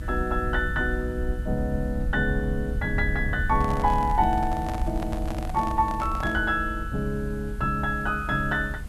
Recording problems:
background hiss; slope -4 dB per octave, SNR 24 dB
rumble; below 76 Hz, SNR 6 dB
microphone handling noise; from 3.5 to 6.5 s; peak -4 dB vs average level

